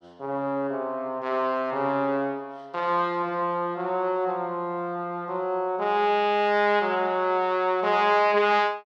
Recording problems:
none

